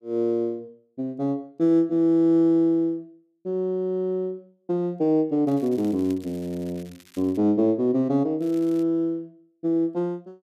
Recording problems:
crackle; from 5.5 to 7.5 s and at 8.5 s; loose cable, SNR 27 dB

